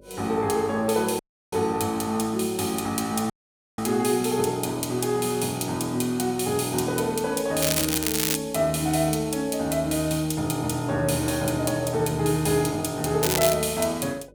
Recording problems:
hum; 50 Hz, harmonics up to 600 Hz, SNR 27 dB
audio cutting out; at 1 s and at 3.5 s
crackle; at 7.5 s and at 13 s; loose cable, SNR 1 dB

